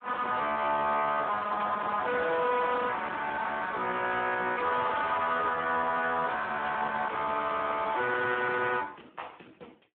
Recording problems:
telephone audio; 260 Hz to 3.7 kHz, Speex
distortion; soft clipping, signal-to-distortion ratio 11 dB

